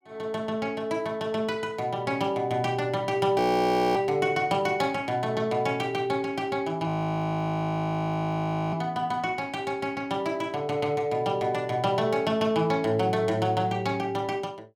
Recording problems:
frozen audio; at 3.5 s for 0.5 s and at 7 s for 2 s

